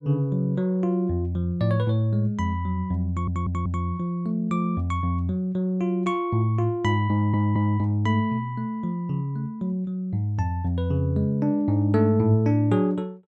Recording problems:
stutter; at 3 s and at 7 s

